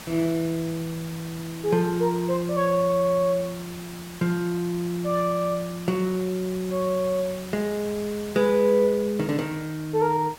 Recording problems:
hiss; slope -2 dB per octave, SNR 16 dB

